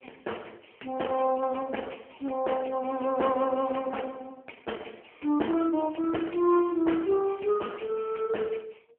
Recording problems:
telephone audio; 260 Hz to 3.2 kHz, AMR-NB

